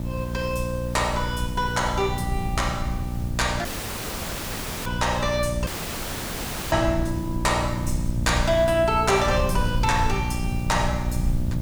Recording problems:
hum; 60 Hz, harmonics up to 900 Hz, SNR 5 dB
background hiss; slope -3 dB per octave, SNR 20 dB
rumble; below 110 Hz, SNR 7 dB
dropout; at 3.5 s for 1 s and at 5.5 s for 1 s

